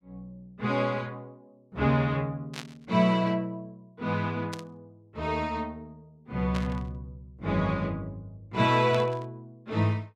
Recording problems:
burst of static; 4 times, first at 2.5 s; peak -5 dB vs average level

